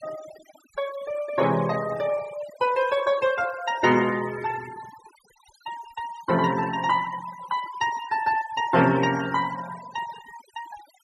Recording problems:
noise reduction artefacts; signal-to-artefact ratio 17 dB

